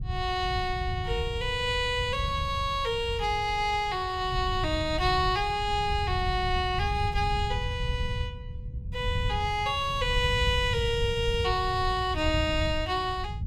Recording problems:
wind noise; below 110 Hz, SNR 6 dB

